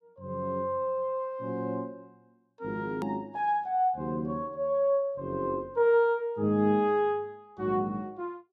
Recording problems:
click at an edit; at 3 s

